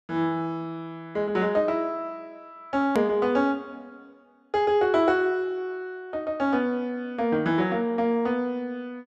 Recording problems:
click at an edit; at 3 s

